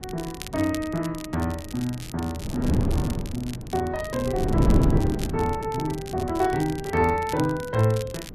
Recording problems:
wind noise; below 270 Hz, SNR 1 dB
crackle; vinyl, SNR 15 dB

